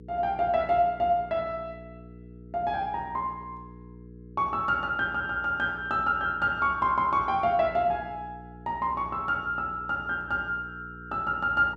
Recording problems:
hum; 60 Hz, harmonics up to 480 Hz, SNR 19 dB

